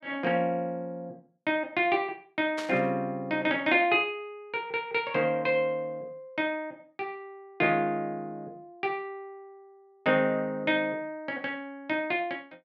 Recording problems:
burst of static; at 2.5 s; peak -5 dB vs average level

